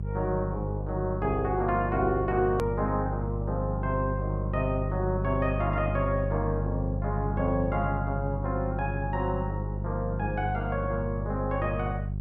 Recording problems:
mains hum; 50 Hz, harmonics up to 400 Hz, SNR 2 dB
click at an edit; at 2.5 s

